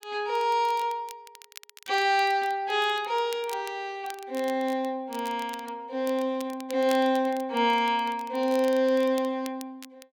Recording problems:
crackling; vinyl, SNR 20 dB

